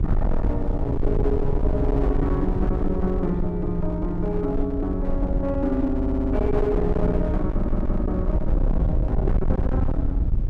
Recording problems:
distortion; hard clipping, uneven, signal-to-distortion ratio 7 dB
low-frequency rumble; below 86 Hz, SNR 1 dB
wind on the microphone; below 220 Hz, SNR 18 dB
audio stuttering; at 6 s and at 7.5 s

